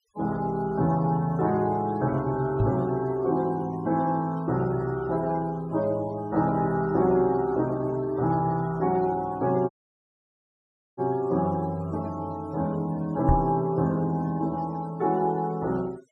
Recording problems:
noise reduction artefacts; signal-to-artefact ratio 24 dB
microphone thump; at 2.5 s and at 13 s; peak +6 dB vs average level
audio cutting out; at 9.5 s for 1.5 s

